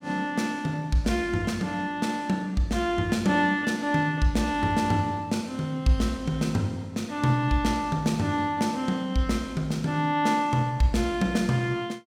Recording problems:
none

